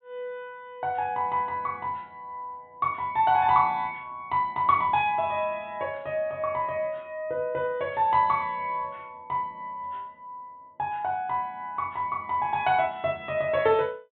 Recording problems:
treble missing; nothing above 4 kHz

